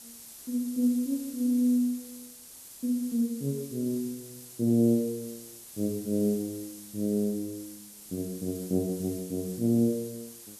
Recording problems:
background hiss; SNR 15 dB

